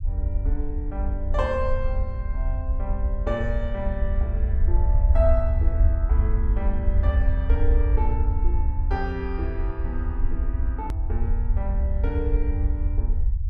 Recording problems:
low-frequency rumble; below 68 Hz, SNR -7 dB
hard cut with a click; at 11 s

